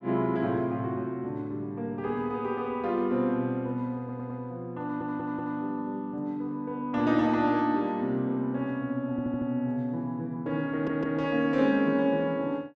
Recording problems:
stutter; 4 times, first at 4 s

